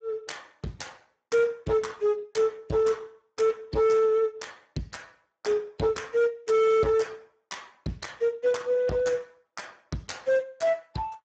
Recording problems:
codec artefacts; Speex, log-spectral distance 4 dB, nothing above 7.6 kHz
distortion; hard clipping, signal-to-distortion ratio 10 dB

